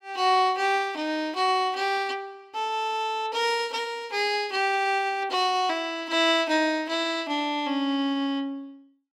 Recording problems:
none

